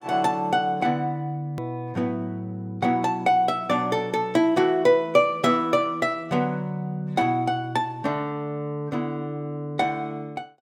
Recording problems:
click at an edit; at 1.5 s

